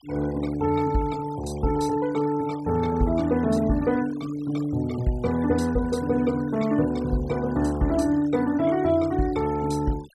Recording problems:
noise reduction artefacts; signal-to-artefact ratio 21 dB

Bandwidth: 13.5 kHz